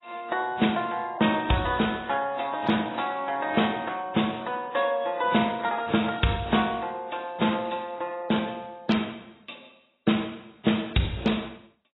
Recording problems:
lossy compression; AAC, then AAC, log-spectral distance 7 dB

